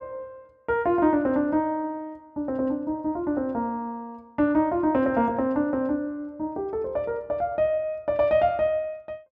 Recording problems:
none

